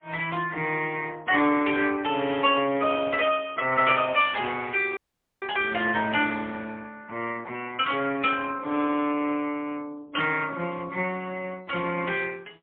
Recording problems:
phone line; 240 Hz to 3.4 kHz, AMR-NB, then MP3
dropout; at 5 s

